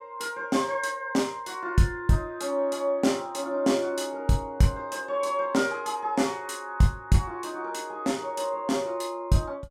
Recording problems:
none

